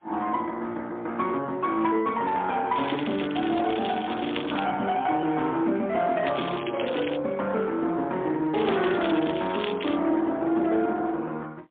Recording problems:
phone line; 190 Hz to 3.8 kHz, AMR-NB, then MP3
distortion; hard clipping, uneven, signal-to-distortion ratio 12 dB
crackle; from 3 to 4.5 s, at 6.5 s and from 8.5 to 10 s; loose cable, SNR 11 dB

